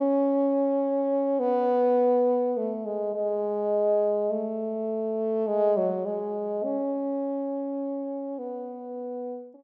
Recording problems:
none

